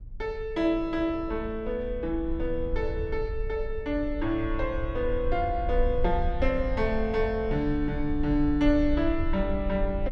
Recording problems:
rumble; below 58 Hz, SNR 7 dB

